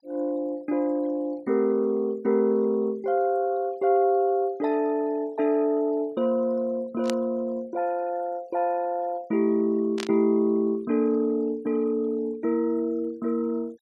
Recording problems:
noise reduction artefacts; signal-to-artefact ratio 27 dB
static burst; at 7 s and at 10 s; peak -4 dB vs average level

